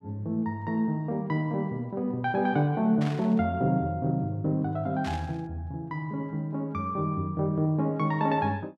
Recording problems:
static burst; at 3 s and at 5 s; peak -8 dB vs average level

